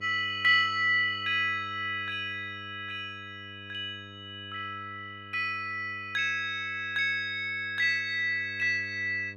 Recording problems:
hum; 50 Hz, harmonics up to 1.1 kHz, SNR 21 dB

